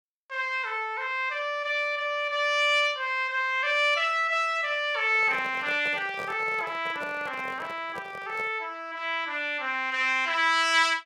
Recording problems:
microphone handling noise; from 5 to 8.5 s; peak -9 dB vs average level

